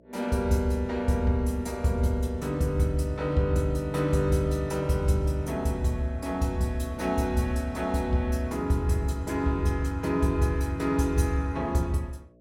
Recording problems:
hum; 60 Hz, harmonics up to 660 Hz, SNR 30 dB

